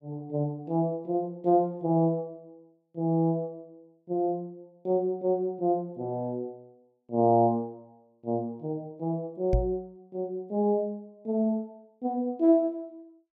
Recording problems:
microphone thump; at 9.5 s; peak +6 dB vs average level

